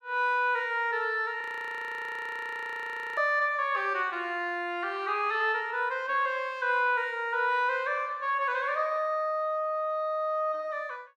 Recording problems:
audio freezing; at 1.5 s for 2 s

